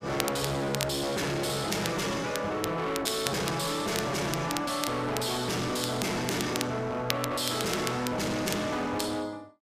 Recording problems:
distorted audio; hard clipping, signal-to-distortion ratio 6 dB
crackle; vinyl, SNR 8 dB

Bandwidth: 14.5 kHz